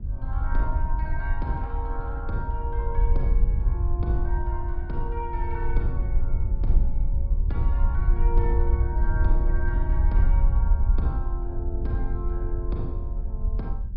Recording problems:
treble missing; nothing above 5.5 kHz
wind noise; below 60 Hz, SNR -8 dB

